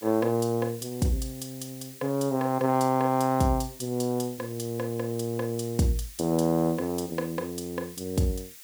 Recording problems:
background hiss; SNR 17 dB

